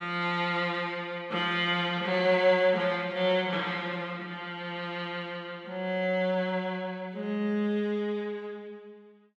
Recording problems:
none

